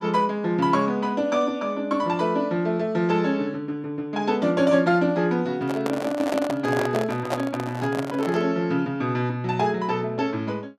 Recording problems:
microphone handling noise; from 5.5 to 8.5 s; peak +2 dB vs average level

